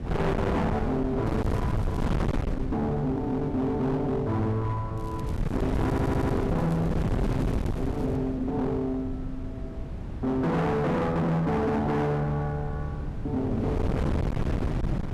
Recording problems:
distorted audio; hard clipping, uneven, signal-to-distortion ratio 6 dB
wind on the microphone; below 300 Hz, SNR 3 dB
crackling; at 1.5 s and from 5 to 8 s; loose cable, SNR 28 dB
audio stuttering; at 6 s

